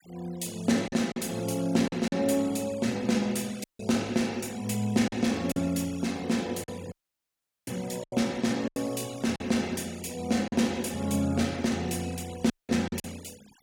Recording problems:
denoising artefacts; signal-to-artefact ratio 20 dB
lost packets; 5% of the sound replaced, filled with silence
dropout; at 3.5 s, at 7 s for 1 s and at 13 s

